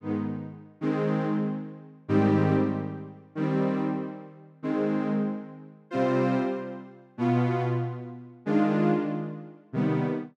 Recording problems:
none

